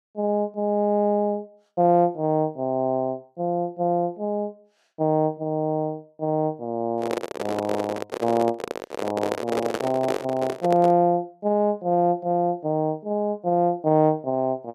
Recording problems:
handling noise; from 7 to 11 s; peak +1 dB vs average level

